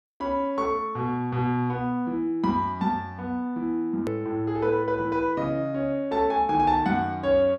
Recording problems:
hard cut with a click; at 4 s

